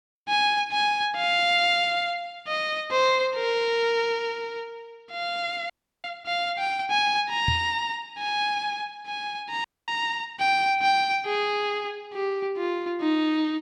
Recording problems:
frozen audio; at 5.5 s and at 9.5 s
microphone bump; at 7.5 s; peak +1 dB vs average level

